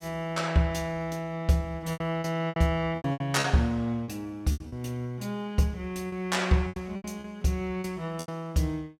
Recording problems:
packet loss; 10% of the sound replaced, filled with repeated pitch periods

